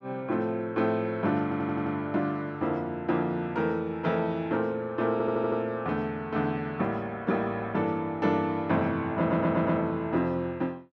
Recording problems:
stutter; at 1.5 s, at 5 s and at 9 s

